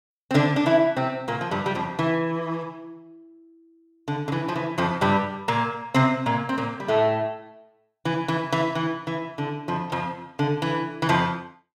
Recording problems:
none

